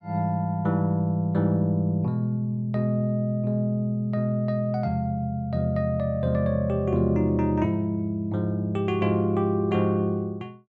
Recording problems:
none

